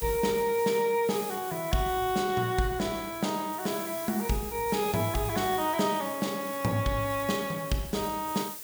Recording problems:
background hiss; SNR 10 dB

